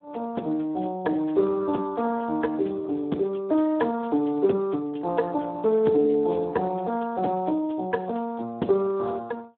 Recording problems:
telephone audio; 190 Hz to 3.1 kHz, Speex

